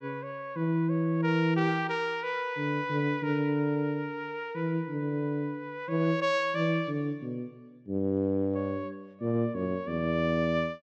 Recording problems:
low-pass filter; nothing above 8 kHz

